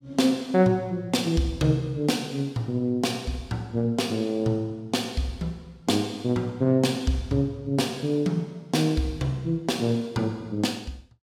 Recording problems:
none

